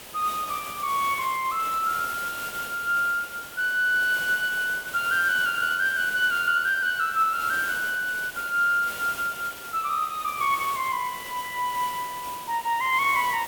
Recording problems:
hiss; slope -2 dB per octave, SNR 12 dB

